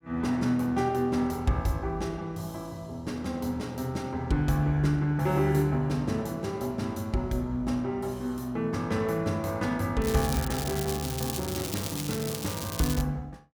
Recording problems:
crackle; from 10 to 13 s; loose cable, SNR 7 dB

